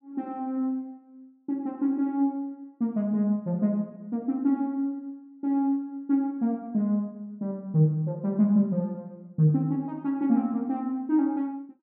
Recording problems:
none

